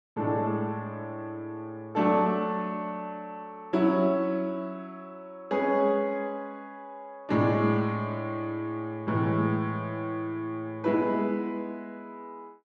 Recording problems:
none

